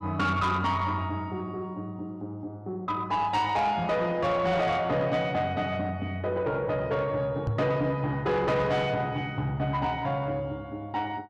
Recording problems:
distorted audio; soft clipping, signal-to-distortion ratio 10 dB
microphone bump; at 7.5 s; peak +2 dB vs average level

